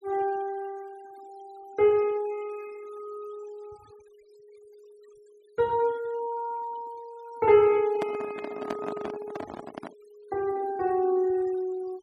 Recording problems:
denoising artefacts; signal-to-artefact ratio 24 dB
handling noise; from 8 to 10 s; peak -2 dB vs average level

